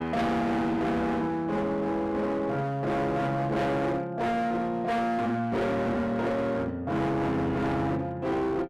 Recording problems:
distorted audio; hard clipping, uneven, signal-to-distortion ratio 7 dB

